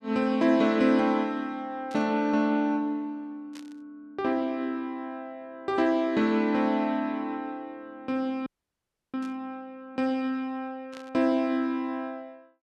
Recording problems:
burst of static; 4 times, first at 2 s; peak -14 dB vs average level
audio freezing; at 8.5 s for 0.5 s

